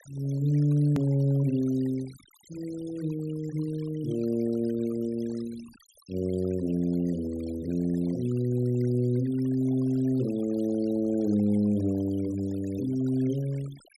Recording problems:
noise reduction artefacts; signal-to-artefact ratio 23 dB
click at an edit; at 1 s

